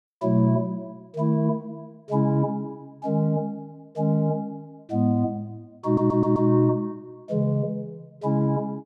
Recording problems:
audio stuttering; at 6 s

